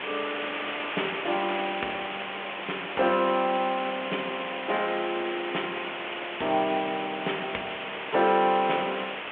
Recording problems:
telephone audio; 280 Hz to 3.4 kHz, G.726
hiss; SNR 5 dB

